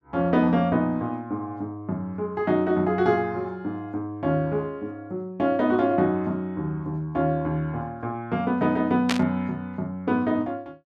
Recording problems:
burst of static; at 9 s; peak +4 dB vs average level

